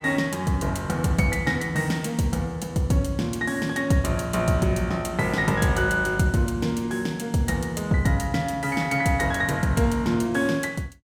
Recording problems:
none

